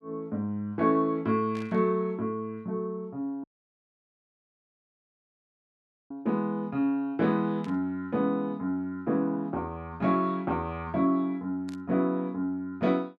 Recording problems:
burst of static; at 1.5 s, at 7.5 s and at 12 s; peak -14 dB vs average level
audio cutting out; at 3.5 s for 2.5 s

